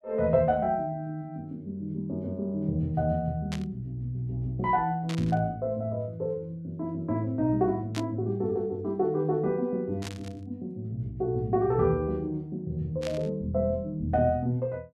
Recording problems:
static burst; 5 times, first at 3.5 s; peak -3 dB vs average level

